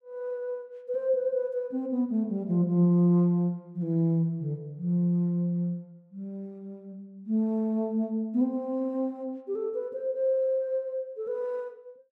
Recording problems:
none

